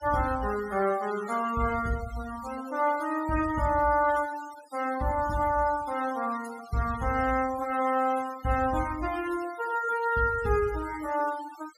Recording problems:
denoising artefacts; signal-to-artefact ratio 16 dB

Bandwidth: 15.5 kHz